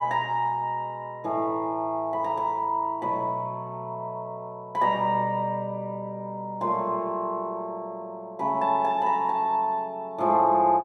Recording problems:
none

